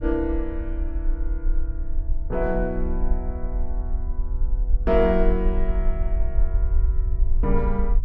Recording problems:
low-frequency rumble; below 46 Hz, SNR 0 dB

